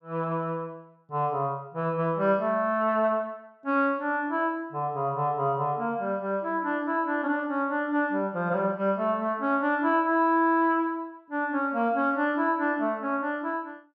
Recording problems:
none

